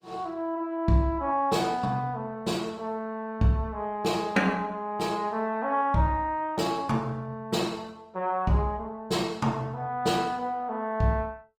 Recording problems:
codec artefacts; Opus, log-spectral distance 2 dB

